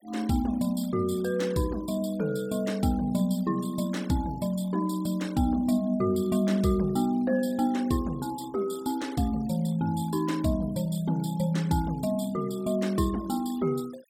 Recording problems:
noise reduction artefacts; signal-to-artefact ratio 22 dB

